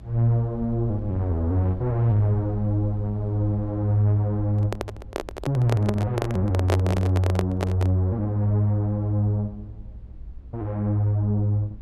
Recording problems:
rumble; below 66 Hz, SNR 18 dB
microphone handling noise; from 4.5 to 8 s; peak +3 dB vs average level

